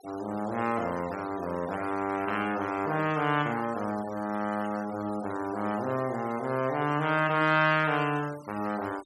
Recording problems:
noise reduction artefacts; signal-to-artefact ratio 18 dB

